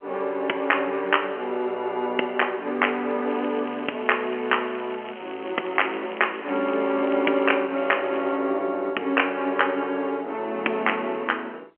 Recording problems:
telephone audio; 260 Hz to 3.1 kHz, G.711
crackling; from 3.5 to 7.5 s and at 8 s; loose cable, SNR 19 dB

